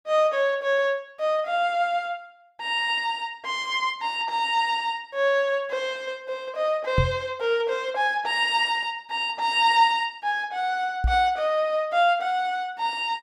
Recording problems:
microphone bump; at 7 s and at 11 s; peak +4 dB vs average level

